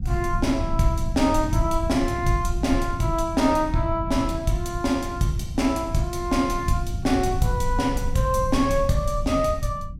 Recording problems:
low-frequency rumble; below 94 Hz, SNR 7 dB

